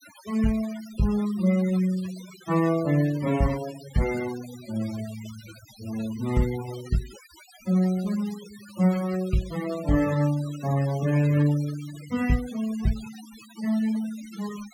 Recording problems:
noise reduction artefacts; signal-to-artefact ratio 17 dB

